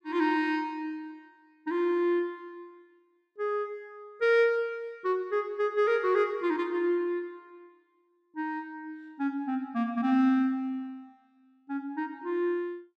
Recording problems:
none

